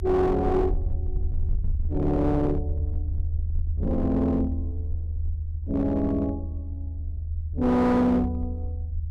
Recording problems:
distorted audio; hard clipping, signal-to-distortion ratio 11 dB
rumble; below 80 Hz, SNR 6 dB

